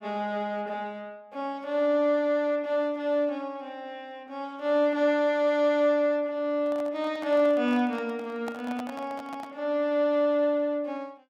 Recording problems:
handling noise; from 6.5 to 9.5 s; peak -7 dB vs average level

